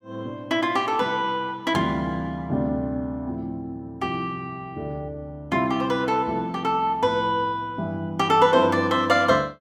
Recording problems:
none

